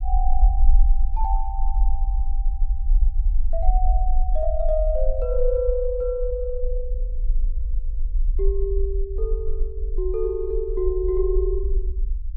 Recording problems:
rumble; below 44 Hz, SNR -2 dB

